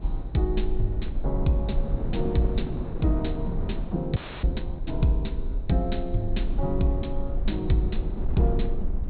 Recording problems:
treble cut off; nothing above 4.2 kHz
rumble; below 46 Hz, SNR 5 dB
wind noise; below 280 Hz, SNR 7 dB
frozen audio; at 4 s

